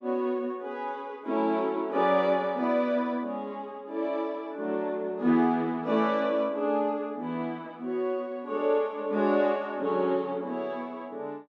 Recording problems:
none

